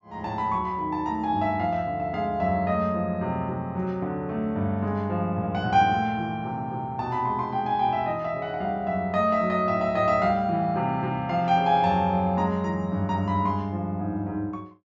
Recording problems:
treble cut off; nothing above 8 kHz

